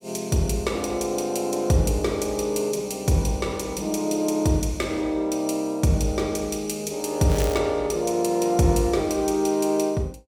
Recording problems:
crackling; at 7.5 s; loose cable, SNR 13 dB

